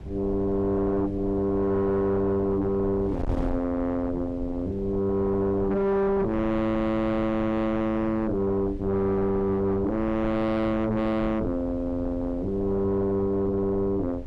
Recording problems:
distortion; soft clipping, signal-to-distortion ratio 7 dB
wind on the microphone; below 150 Hz, SNR 12 dB

